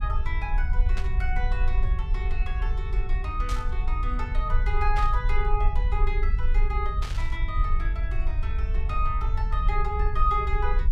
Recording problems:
low-frequency rumble; below 52 Hz, strongest tone 22 Hz, SNR -5 dB
static burst; 4 times, first at 1 s; peak -2 dB vs average level

